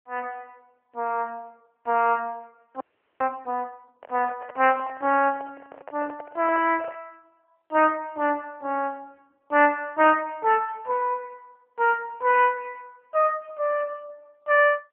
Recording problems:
phone line; 260 Hz to 3 kHz, AMR-NB
audio freezing; at 3 s
microphone handling noise; from 4 to 7 s; peak -10 dB vs average level

